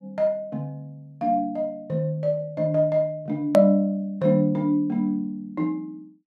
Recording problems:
edit click; at 3.5 s

